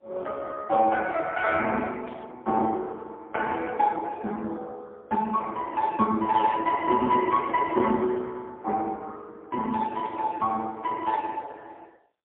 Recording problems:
phone line; 240 Hz to 3 kHz, AMR-NB, then MP3
static burst; at 2 s and at 10 s; peak -16 dB vs average level

